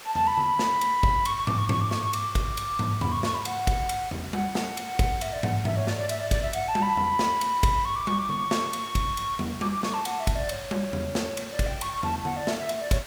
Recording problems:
background hiss; SNR 16 dB

